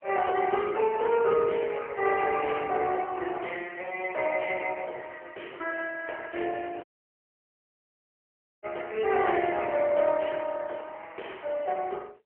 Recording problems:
telephone audio; 340 Hz to 3.3 kHz, AMR-NB
dropout; at 7 s for 2 s

